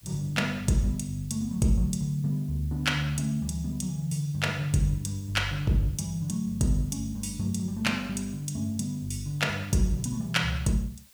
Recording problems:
background hiss; slope +1 dB per octave, SNR 26 dB

